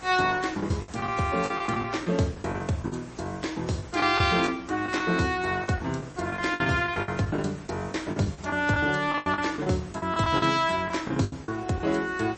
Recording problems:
lossy compression; MP3, log-spectral distance 6 dB, nothing above 8.2 kHz
hum; 60 Hz, harmonics up to 660 Hz, SNR 24 dB
background hiss; SNR 20 dB
packet loss; 13% of the sound replaced, filled with the last packet

